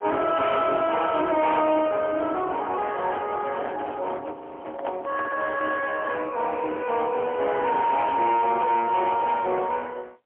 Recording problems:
telephone audio; 260 Hz to 3.3 kHz, AMR-NB, then MP3
distorted audio; soft clipping, signal-to-distortion ratio 11 dB
microphone handling noise; from 3 to 6 s; peak -3 dB vs average level
audio freezing; at 4.5 s

